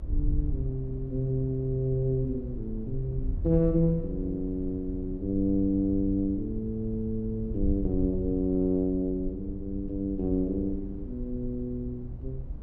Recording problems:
low-frequency rumble; below 96 Hz, SNR 15 dB
wind noise; below 70 Hz, SNR 9 dB

